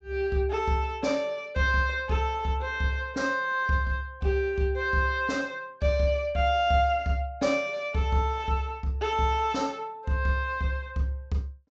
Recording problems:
treble cut off; nothing above 8 kHz

